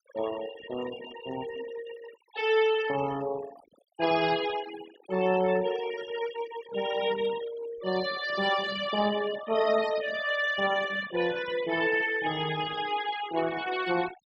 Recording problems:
denoising artefacts; signal-to-artefact ratio 13 dB

